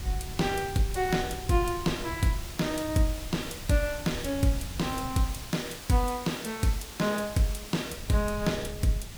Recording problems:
background hiss; slope -1 dB per octave, SNR 12 dB
wind on the microphone; below 130 Hz, SNR 12 dB

